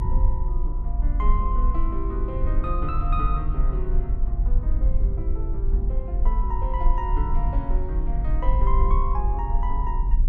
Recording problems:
low-frequency rumble; below 48 Hz, strongest tone 26 Hz, SNR -7 dB

